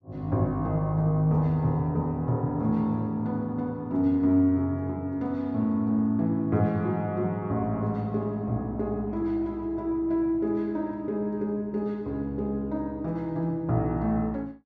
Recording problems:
none

